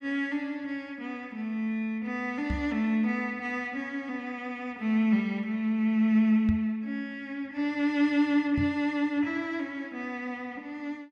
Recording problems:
microphone thump; at 2.5 s, at 6.5 s and at 8.5 s; peak +2 dB vs average level

